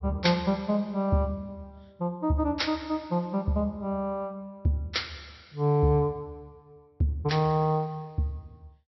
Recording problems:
treble cut off; nothing above 5.6 kHz

